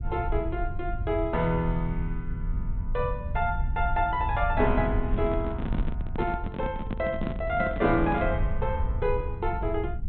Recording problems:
treble cut off; nothing above 4 kHz
low-frequency rumble; below 82 Hz, SNR 4 dB
microphone handling noise; from 5 to 8.5 s; peak +1 dB vs average level

